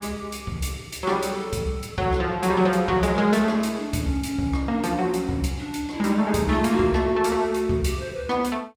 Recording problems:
none

